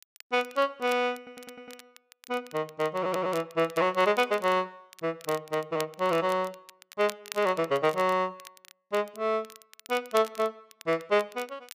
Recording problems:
crackling; vinyl, SNR 19 dB
audio stuttering; at 1 s and at 3 s

